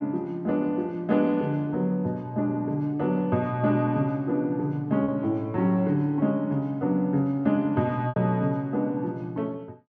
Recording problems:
lost packets; 1.2% of the sound replaced, filled with repeated pitch periods

